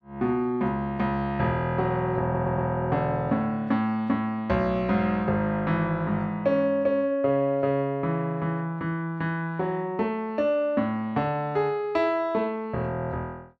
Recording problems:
audio stuttering; at 2 s

